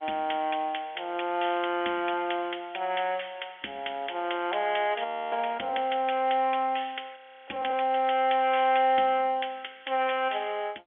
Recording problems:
phone line; 240 Hz to 3.4 kHz, G.711
frozen audio; at 5 s and at 7 s

